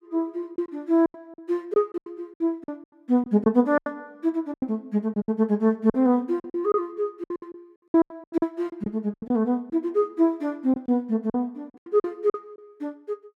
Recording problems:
packet loss; 14% of the sound replaced, filled with silence

